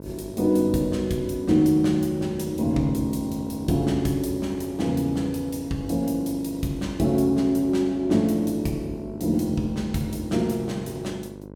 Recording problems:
hum; 50 Hz, harmonics up to 1.1 kHz, SNR 15 dB

